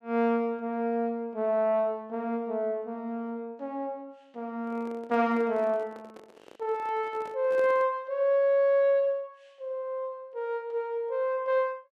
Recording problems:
microphone handling noise; from 4.5 to 8 s; peak -9 dB vs average level

